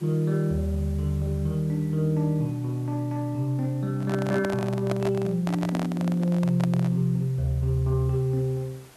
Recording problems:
background hiss; slope -3 dB per octave, SNR 26 dB
microphone handling noise; from 4 to 7 s; peak -2 dB vs average level

